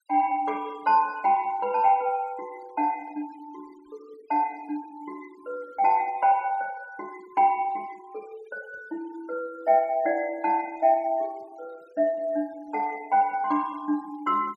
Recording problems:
noise reduction artefacts; signal-to-artefact ratio 27 dB

